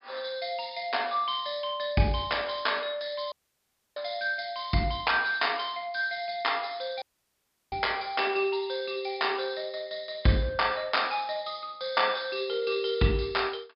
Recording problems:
treble missing; nothing above 5.5 kHz
dropout; at 3.5 s for 0.5 s and at 7 s for 0.5 s

